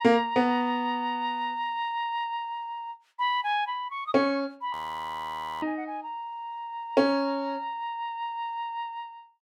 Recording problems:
frozen audio; at 4.5 s for 1 s

